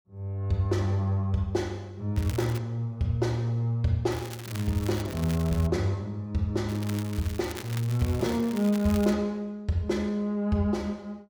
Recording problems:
crackling; at 2 s, from 4 to 5.5 s and from 6.5 to 9 s; loose cable, SNR 15 dB

